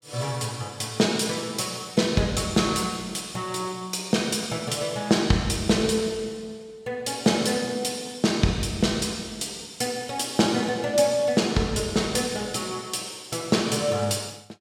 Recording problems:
none

